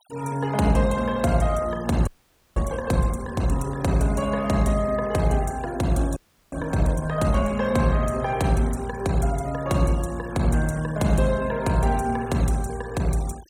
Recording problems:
noise reduction artefacts; signal-to-artefact ratio 21 dB
frozen audio; at 2 s and at 6 s

